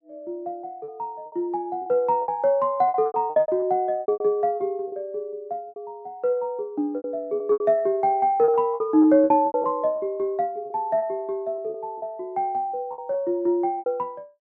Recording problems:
packet loss; 12% of the sound replaced, filled with repeated pitch periods

